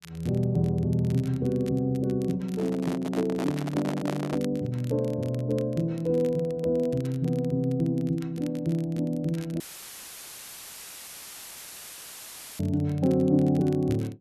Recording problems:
crackling; vinyl, SNR 24 dB
handling noise; from 2.5 to 4.5 s; peak -1 dB vs average level
dropout; at 9.5 s for 3 s; filled with static

